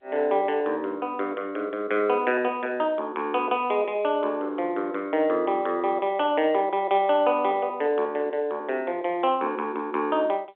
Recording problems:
telephone audio; 260 Hz to 3.5 kHz, G.711

